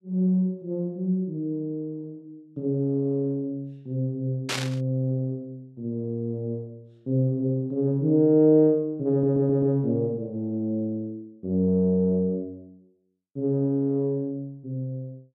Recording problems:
static burst; at 4.5 s; peak +1 dB vs average level
audio stuttering; at 9 s

